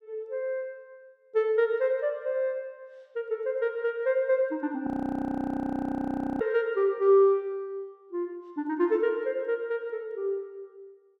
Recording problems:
audio freezing; at 5 s for 1.5 s

